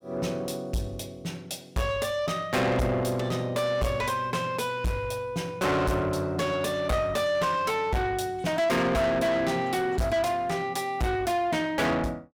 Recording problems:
distortion; soft clipping, signal-to-distortion ratio 6 dB

